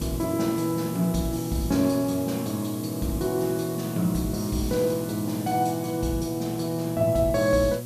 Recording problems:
hum; 60 Hz, harmonics up to 960 Hz, SNR 11 dB
hiss; slope +1 dB per octave, SNR 15 dB

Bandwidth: 14.5 kHz